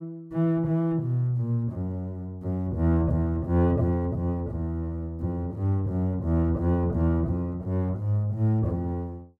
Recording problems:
none

